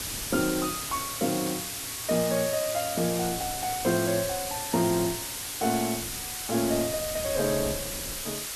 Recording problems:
background hiss; slope +2 dB per octave, SNR 3 dB
wind on the microphone; below 310 Hz, SNR 18 dB

